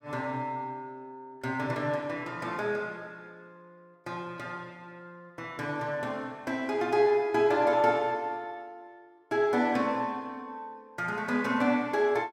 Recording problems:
none

